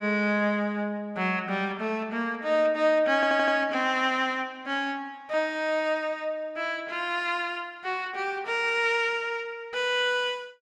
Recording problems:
audio stuttering; at 3 s

